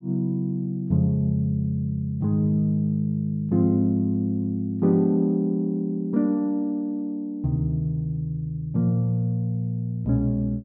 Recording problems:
treble cut off; nothing above 6.1 kHz

